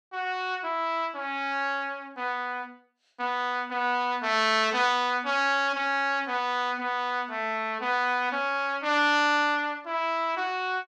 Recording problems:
none

